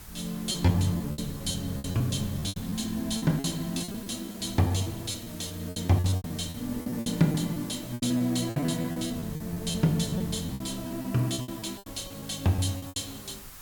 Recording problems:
hiss; SNR 16 dB
wind noise; below 150 Hz, SNR 20 dB
packet loss; 16% of the sound replaced, filled with repeated pitch periods

